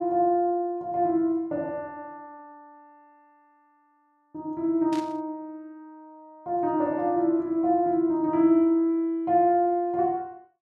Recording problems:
static burst; at 5 s; peak -13 dB vs average level

